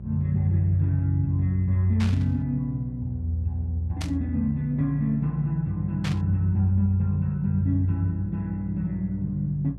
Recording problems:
hum; 60 Hz, harmonics up to 540 Hz, SNR 13 dB
burst of static; at 2 s, at 4 s and at 6 s; peak -6 dB vs average level

